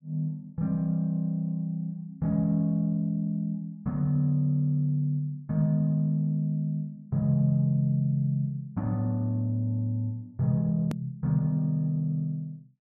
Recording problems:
edit click; at 11 s

